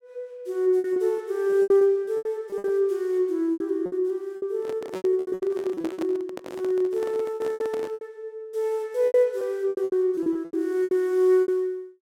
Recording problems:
packet loss; 16% of the sound replaced, filled with repeated pitch periods
handling noise; from 4.5 to 8 s; peak -6 dB vs average level

